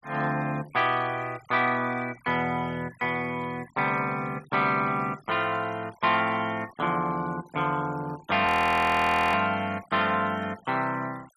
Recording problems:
denoising artefacts; signal-to-artefact ratio 24 dB
audio freezing; at 8.5 s for 1 s

